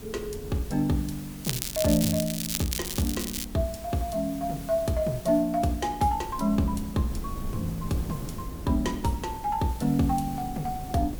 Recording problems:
hiss; slope -2 dB per octave, SNR 17 dB
low-frequency rumble; below 200 Hz, SNR 13 dB
crackling; from 1.5 to 3.5 s; loose cable, SNR 4 dB

